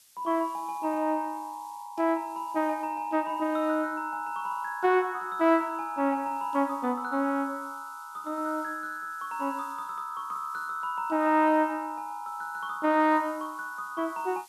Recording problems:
hiss; slope +4 dB per octave, SNR 26 dB

